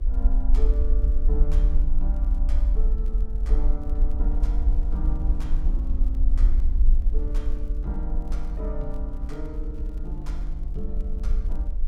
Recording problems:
electrical hum; 50 Hz, harmonics up to 550 Hz, SNR 15 dB
rumble; below 46 Hz, SNR -11 dB
wind noise; below 160 Hz, SNR 11 dB
crackling; vinyl, SNR 28 dB

